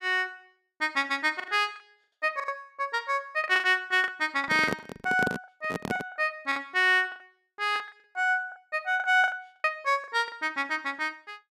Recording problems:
lost packets; 12% of the sound replaced, filled with the last packet
microphone handling noise; from 4.5 to 6 s; peak +1 dB vs average level

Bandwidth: 14.5 kHz